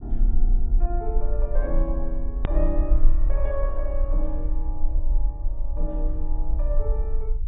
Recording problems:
treble cut off; nothing above 4 kHz
low-frequency rumble; below 40 Hz, strongest tone 18 Hz, SNR -7 dB
hard cut with a click; at 2.5 s

